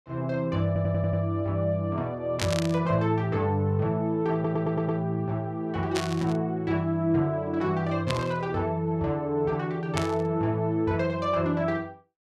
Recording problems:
stutter; at 0.5 s and at 4.5 s
static burst; 4 times, first at 2.5 s; peak +2 dB vs average level

